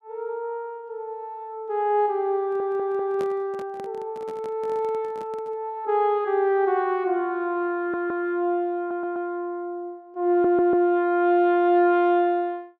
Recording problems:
stutter; 4 times, first at 2.5 s
microphone handling noise; from 2.5 to 5.5 s; peak -9 dB vs average level

